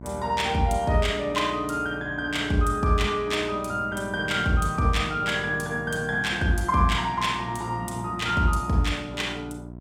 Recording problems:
hum; 60 Hz, harmonics up to 1 kHz, SNR 16 dB

